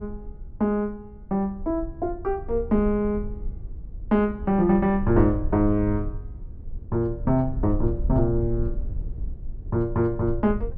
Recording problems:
rumble; below 62 Hz, SNR 10 dB

